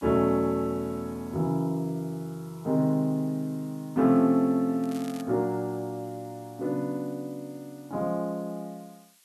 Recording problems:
background hiss; slope +3 dB per octave, SNR 28 dB
crackling; at 5 s; loose cable, SNR 20 dB

